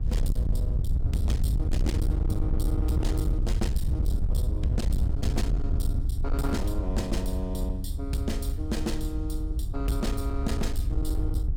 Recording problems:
distortion; hard clipping, uneven, signal-to-distortion ratio 7 dB
mains hum; 50 Hz, harmonics up to 1.2 kHz, SNR 15 dB
rumble; below 82 Hz, SNR -5 dB

